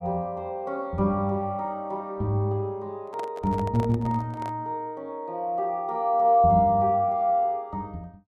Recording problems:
microphone handling noise; from 3 to 4.5 s; peak -9 dB vs average level

